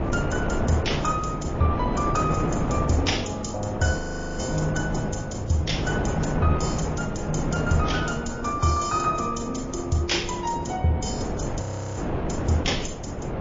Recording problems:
codec artefacts; AAC, then MP3, log-spectral distance 4 dB
wind on the microphone; below 550 Hz, SNR 3 dB
audio freezing; at 4 s and at 12 s

